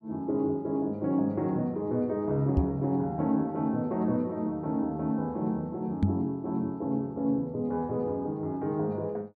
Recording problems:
microphone bump; at 2.5 s and at 6 s; peak +8 dB vs average level

